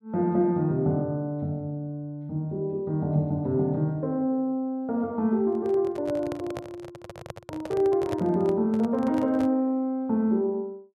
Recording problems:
handling noise; from 5.5 to 9.5 s; peak -4 dB vs average level

